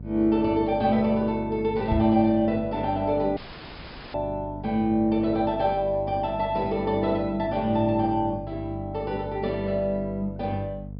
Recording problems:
low-pass filter; nothing above 5.5 kHz
hum; 50 Hz, harmonics up to 500 Hz, SNR 13 dB
microphone thump; at 2 s; peak +1 dB vs average level
audio cutting out; at 3.5 s for 1 s

